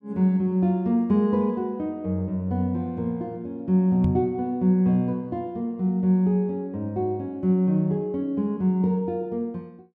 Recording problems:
microphone thump; at 4 s; peak +2 dB vs average level

